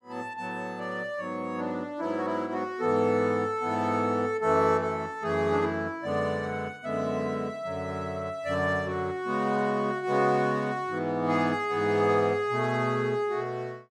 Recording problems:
none

